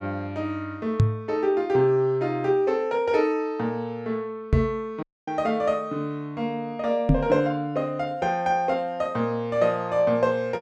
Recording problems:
microphone thump; at 1 s, at 4.5 s and at 7 s; peak +9 dB vs average level
audio cutting out; at 5 s

